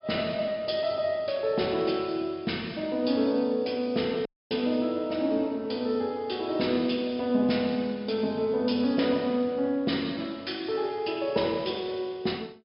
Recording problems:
treble missing; nothing above 5.5 kHz
audio cutting out; at 4.5 s

